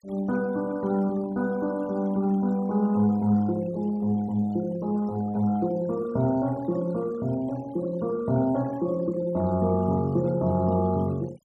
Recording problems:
noise reduction artefacts; signal-to-artefact ratio 24 dB

